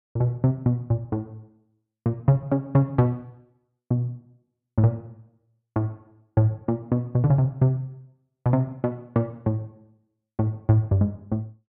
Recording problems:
none

